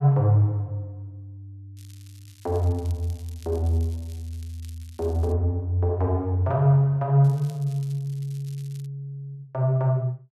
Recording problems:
crackle; from 2 to 5.5 s and from 7 to 9 s; loose cable, SNR 27 dB

